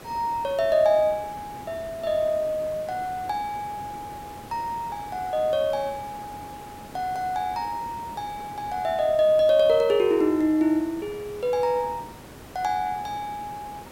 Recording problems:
background hiss; slope -6 dB per octave, SNR 18 dB

